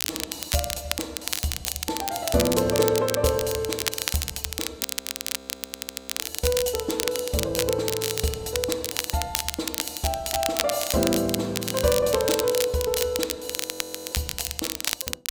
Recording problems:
crackling; vinyl, SNR 2 dB
frozen audio; at 5 s for 1.5 s and at 14 s for 0.5 s

